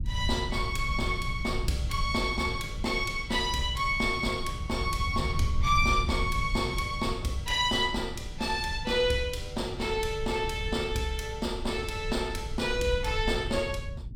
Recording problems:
rumble; below 94 Hz, SNR 7 dB

